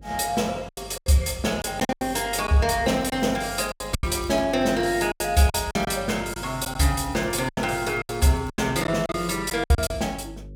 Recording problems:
hum; 50 Hz, harmonics up to 550 Hz, SNR 19 dB
packet loss; 11% of the sound replaced, filled with silence
crackling; at 3 s, from 3.5 to 6 s and from 7 to 8.5 s; loose cable, SNR 29 dB

